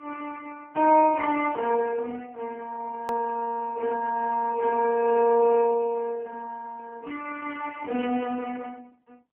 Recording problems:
telephone audio; 220 Hz to 2.5 kHz, AMR-NB
click at an edit; at 3 s

